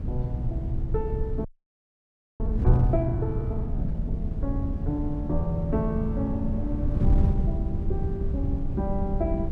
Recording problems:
wind noise; below 120 Hz, SNR -2 dB
frozen audio; at 1.5 s for 1 s

